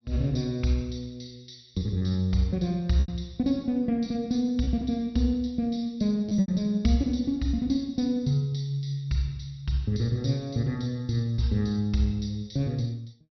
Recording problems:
treble missing; nothing above 5.7 kHz
lost packets; 2% of the sound replaced, filled with repeated pitch periods

